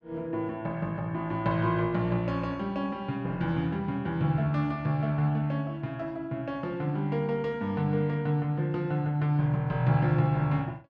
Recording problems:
none

